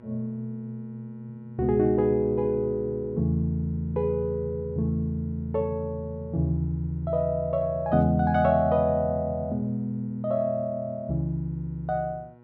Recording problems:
hum; 60 Hz, harmonics up to 1.6 kHz, SNR 25 dB

